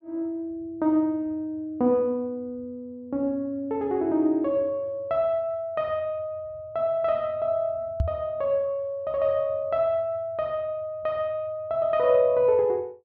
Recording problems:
knock on the microphone; at 8 s; peak +4 dB vs average level

